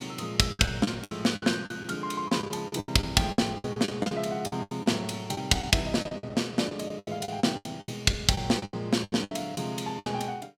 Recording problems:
lost packets; 17% of the sound replaced, filled with the last packet

